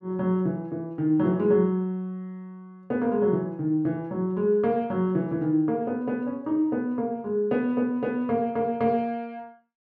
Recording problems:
none

